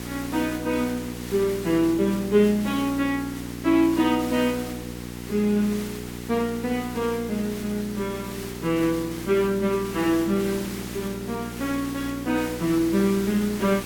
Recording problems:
mains hum; 60 Hz, harmonics up to 960 Hz, SNR 11 dB
background hiss; slope -1 dB per octave, SNR 14 dB

